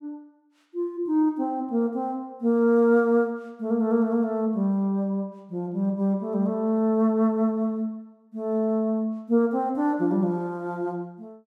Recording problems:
none

